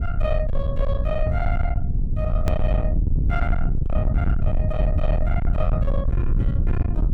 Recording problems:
distorted audio; soft clipping, signal-to-distortion ratio 7 dB
rumble; below 96 Hz, SNR -6 dB
edit click; at 2.5 s

